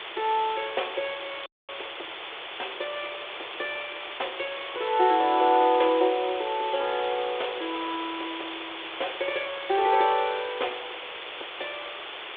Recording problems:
phone line; 300 Hz to 3.6 kHz, G.726
background hiss; SNR 9 dB
audio cutting out; at 1.5 s

